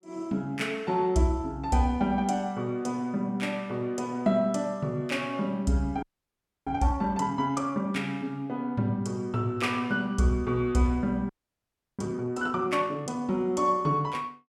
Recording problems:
frozen audio; at 6 s for 0.5 s and at 11 s for 0.5 s

